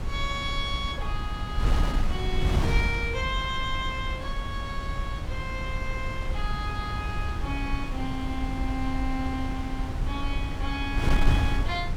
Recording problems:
wind noise; below 98 Hz, SNR -2 dB

